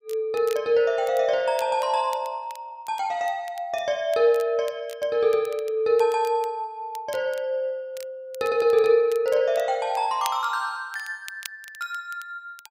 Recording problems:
crackling; vinyl, SNR 22 dB

